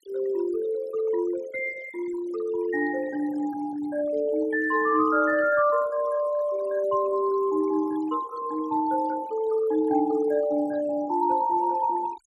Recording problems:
noise reduction artefacts; signal-to-artefact ratio 18 dB

